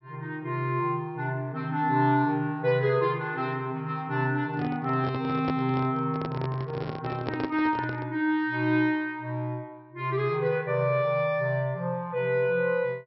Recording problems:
treble cut off; nothing above 5.6 kHz
handling noise; from 4.5 to 8 s; peak 0 dB vs average level

